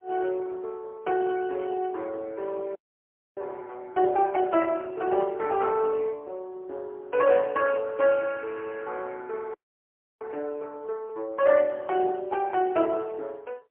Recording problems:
phone line; 280 Hz to 3 kHz, AMR-NB, then MP3
frozen audio; at 3 s for 0.5 s and at 9.5 s for 0.5 s

